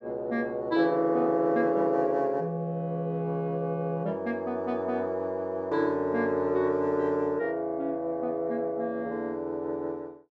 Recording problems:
none

